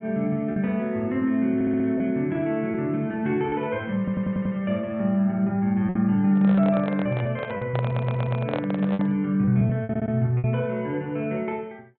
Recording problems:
treble missing; nothing above 4 kHz
packet loss; 5% of the sound replaced, filled with repeated pitch periods
audio stuttering; 4 times, first at 1.5 s
handling noise; from 6.5 to 9 s; peak -1 dB vs average level

